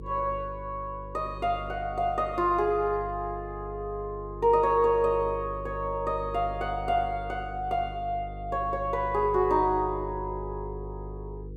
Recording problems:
hum; 50 Hz, harmonics up to 500 Hz, SNR 12 dB

